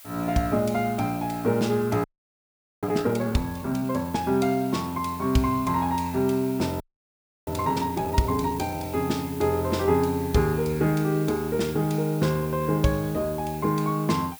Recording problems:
background hiss; SNR 17 dB
audio freezing; at 2 s for 1 s and at 7 s for 0.5 s

